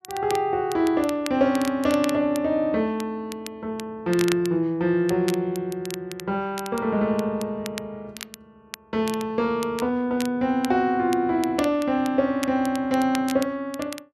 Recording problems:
crackle; vinyl, SNR 15 dB

